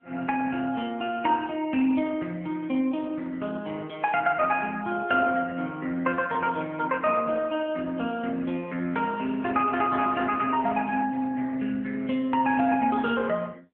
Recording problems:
telephone audio; 220 Hz to 3.1 kHz, AMR-NB

